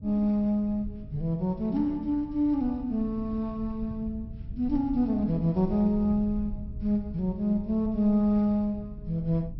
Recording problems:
treble missing; nothing above 5.6 kHz
low-frequency rumble; below 110 Hz, SNR 14 dB

